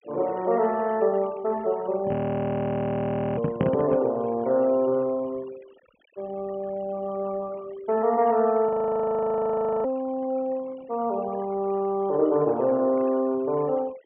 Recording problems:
low-pass filter; nothing above 3.2 kHz
denoising artefacts; signal-to-artefact ratio 24 dB
handling noise; from 2 to 4 s; peak +4 dB vs average level
audio freezing; at 2 s for 1 s and at 8.5 s for 1 s

